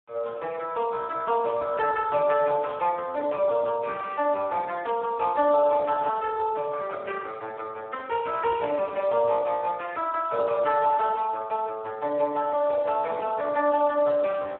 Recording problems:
phone line; 320 Hz to 2.3 kHz, Speex

